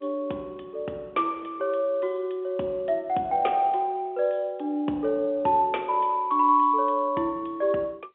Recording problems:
telephone audio; 260 Hz to 3.4 kHz, G.711

